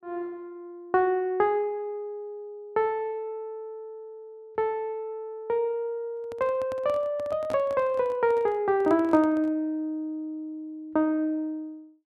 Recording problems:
handling noise; from 6 to 9.5 s; peak -6 dB vs average level

